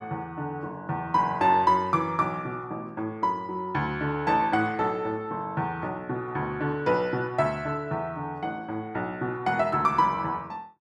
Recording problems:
none

